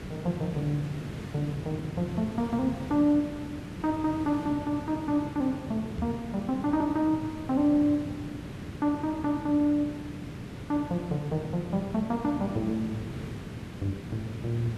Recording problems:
hiss; SNR 10 dB
knock on the microphone; at 6 s; peak -1 dB vs average level

